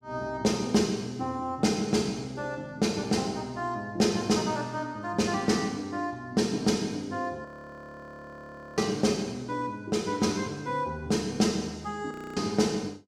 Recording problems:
frozen audio; at 7.5 s for 1.5 s and at 12 s

